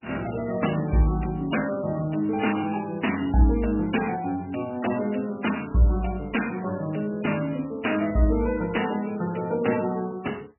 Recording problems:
lossy codec; MP3, log-spectral distance 7 dB, nothing above 2.9 kHz

